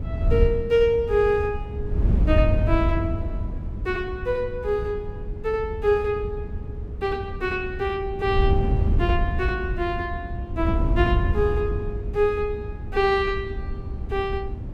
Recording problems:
wind on the microphone; below 100 Hz, SNR 3 dB

